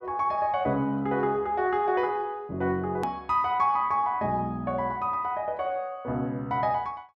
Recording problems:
edit click; at 3 s

